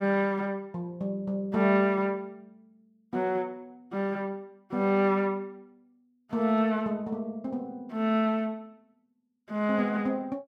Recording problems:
none

